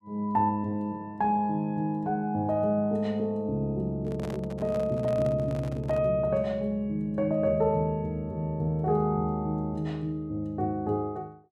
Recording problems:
handling noise; from 4 to 6 s; peak -7 dB vs average level

